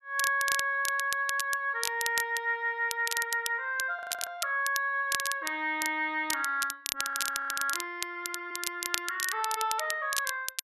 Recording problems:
crackle; vinyl, SNR 5 dB
audio freezing; at 4 s and at 7 s for 0.5 s

